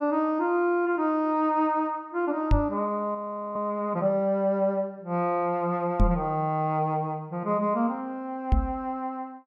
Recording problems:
microphone bump; at 2.5 s, at 6 s and at 8.5 s; peak +7 dB vs average level
audio freezing; at 3 s

